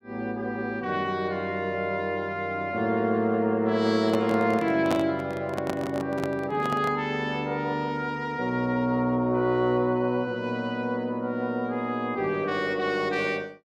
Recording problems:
microphone handling noise; from 4 to 7 s; peak +3 dB vs average level

